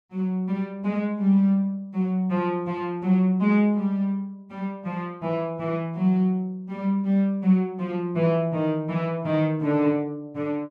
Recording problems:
none

